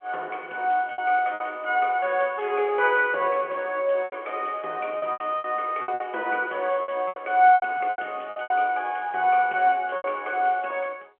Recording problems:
phone line; 320 Hz to 3.3 kHz, G.711
packet loss; 10% of the sound replaced, filled with repeated pitch periods

